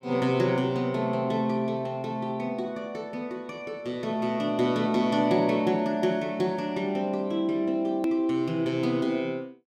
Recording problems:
hard cut with a click; at 8 s

